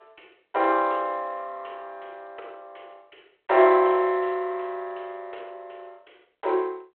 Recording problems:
phone line; 320 Hz to 3.7 kHz, G.726

